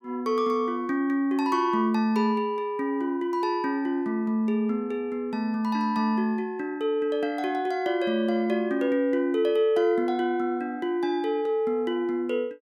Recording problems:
none

